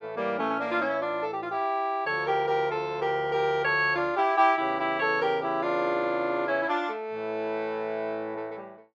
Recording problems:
none

